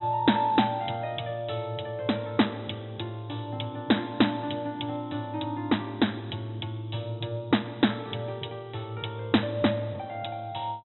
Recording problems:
low-pass filter; nothing above 3.9 kHz

